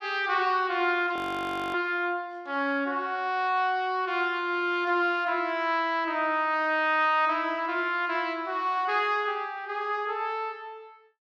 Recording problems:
frozen audio; at 1 s for 0.5 s

